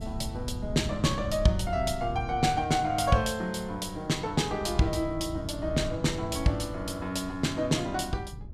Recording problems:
wind noise; below 120 Hz, SNR 11 dB

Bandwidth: 14.5 kHz